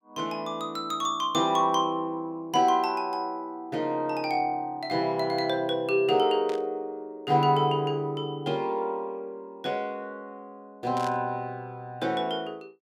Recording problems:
burst of static; at 6.5 s and at 11 s; peak -10 dB vs average level

